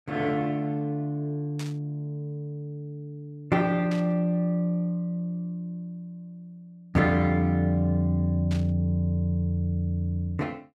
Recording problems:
static burst; at 1.5 s, at 4 s and at 8.5 s; peak -9 dB vs average level

